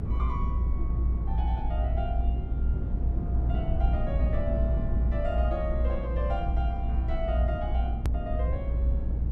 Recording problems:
rumble; below 70 Hz, strongest tone 58 Hz, SNR -8 dB
click at an edit; at 8 s

